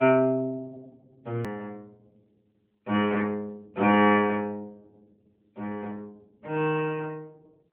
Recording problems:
telephone audio; 220 Hz to 3.3 kHz, AMR-NB
hard cut with a click; at 1.5 s

